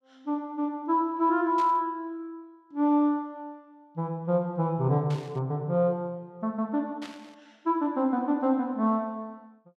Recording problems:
static burst; at 1.5 s, at 5 s and at 7 s; peak -11 dB vs average level

